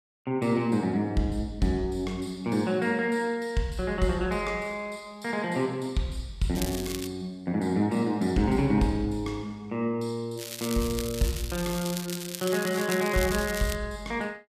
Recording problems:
crackling; at 6.5 s and from 10 to 14 s; loose cable, SNR 8 dB

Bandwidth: 14.5 kHz